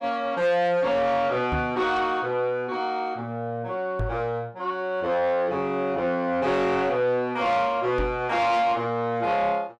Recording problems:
distortion; soft clipping, signal-to-distortion ratio 11 dB
microphone thump; at 1.5 s, at 4 s and at 8 s; peak -1 dB vs average level

